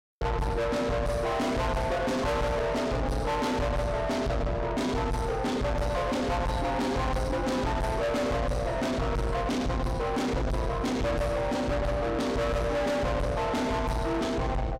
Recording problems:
distorted audio; soft clipping, signal-to-distortion ratio 6 dB

